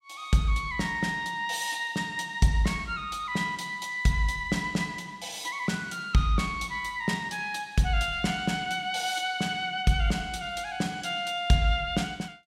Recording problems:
none

